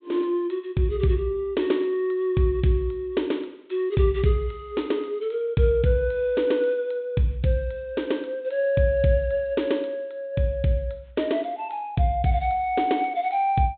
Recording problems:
treble missing; nothing above 4 kHz

